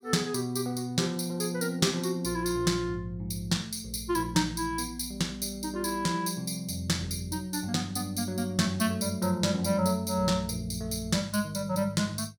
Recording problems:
none

